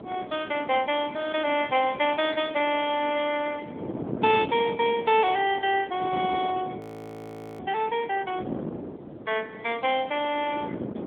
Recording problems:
phone line; 260 Hz to 3.5 kHz, AMR-NB
wind on the microphone; below 490 Hz, SNR 12 dB
audio freezing; at 7 s for 1 s

